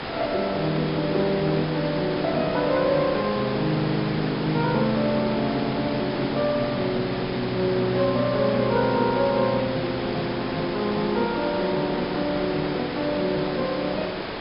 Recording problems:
treble cut off; nothing above 5.5 kHz
background hiss; slope -5 dB per octave, SNR 6 dB

